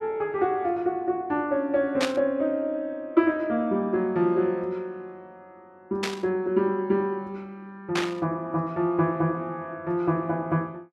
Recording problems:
static burst; at 2 s, at 6 s and at 8 s; peak +3 dB vs average level

